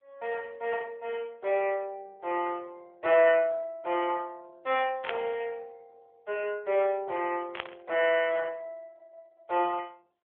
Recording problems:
phone line; 300 Hz to 3.3 kHz, AMR-NB
static burst; at 5 s and at 7.5 s; peak +1 dB vs average level

